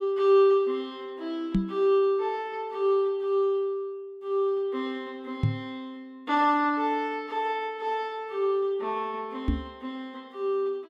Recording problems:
knock on the microphone; at 1.5 s, at 5.5 s and at 9.5 s; peak +6 dB vs average level

